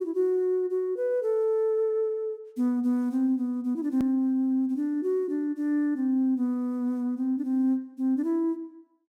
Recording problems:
click at an edit; at 4 s

